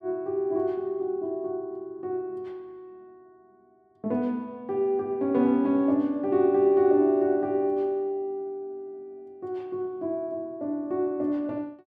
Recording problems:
none

